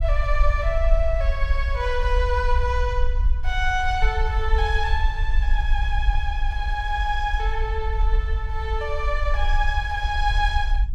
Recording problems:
rumble; below 54 Hz, SNR -1 dB

